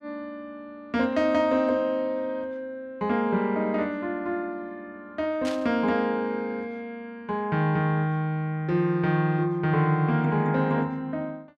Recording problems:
static burst; at 5.5 s; peak -6 dB vs average level

